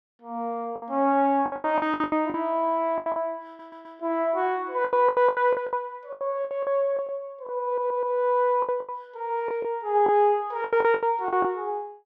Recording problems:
lost packets; 15% of the sound replaced, filled with the last packet
stutter; at 3.5 s and at 7.5 s

